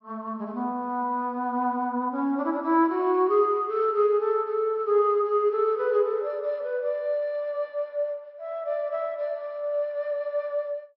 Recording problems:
treble cut off; nothing above 5.6 kHz

